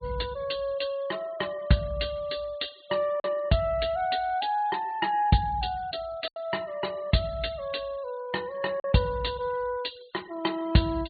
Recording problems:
low-pass filter; nothing above 4.5 kHz
noise reduction artefacts; signal-to-artefact ratio 22 dB
packet loss; 1.4% of the sound replaced, filled with silence

